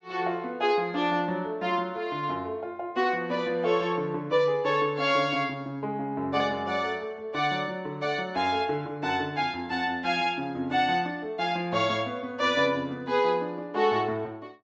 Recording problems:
treble missing; nothing above 8 kHz

